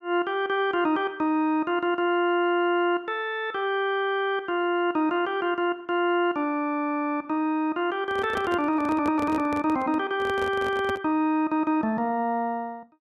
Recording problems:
microphone handling noise; from 8 to 11 s; peak -3 dB vs average level

